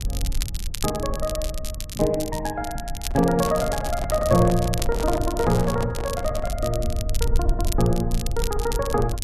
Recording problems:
rumble; below 68 Hz, SNR 6 dB
crackle; vinyl, SNR 11 dB
microphone handling noise; from 3 to 6.5 s; peak -4 dB vs average level

